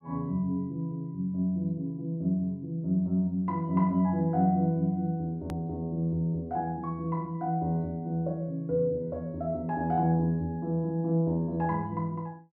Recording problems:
edit click; at 5.5 s

